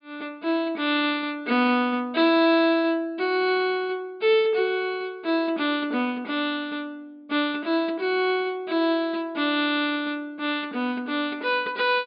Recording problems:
treble missing; nothing above 5 kHz

